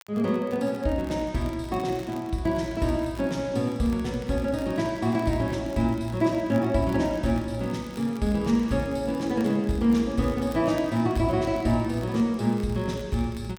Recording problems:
crackling; vinyl, SNR 26 dB

